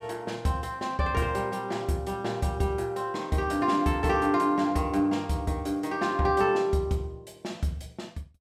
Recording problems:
none

